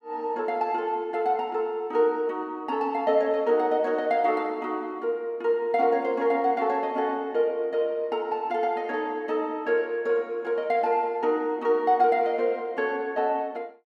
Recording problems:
none

